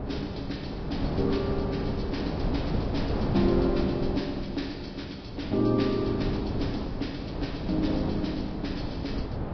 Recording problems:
lossy codec; Vorbis, log-spectral distance 5 dB, nothing above 5.3 kHz
wind noise; below 380 Hz, SNR 2 dB

